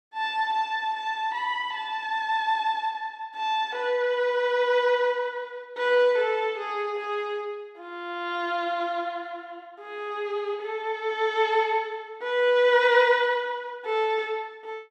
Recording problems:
none

